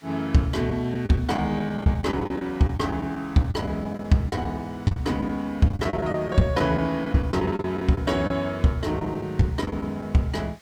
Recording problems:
hiss; SNR 29 dB
lost packets; 11% of the sound replaced, filled with the last packet

